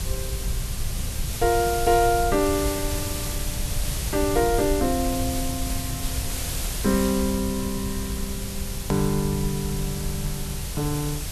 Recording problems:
background hiss; slope -1 dB per octave, SNR 6 dB
rumble; below 98 Hz, SNR 7 dB
edit click; at 9 s

